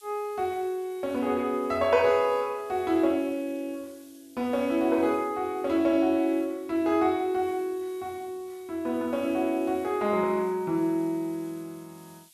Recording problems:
background hiss; SNR 27 dB

